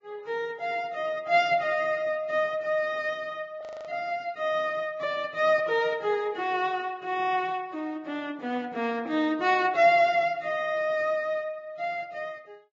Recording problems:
codec artefacts; Vorbis, log-spectral distance 2 dB
audio freezing; at 3.5 s

